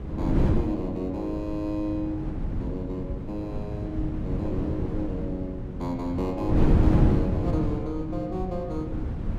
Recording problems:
wind noise; below 200 Hz, SNR -2 dB

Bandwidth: 14.5 kHz